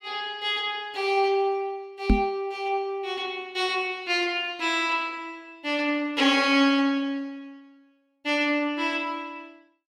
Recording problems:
microphone thump; at 2 s; peak +8 dB vs average level

